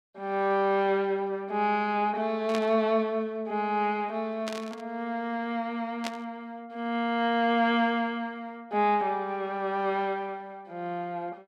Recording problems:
static burst; at 2.5 s, at 4.5 s and at 6 s; peak -3 dB vs average level

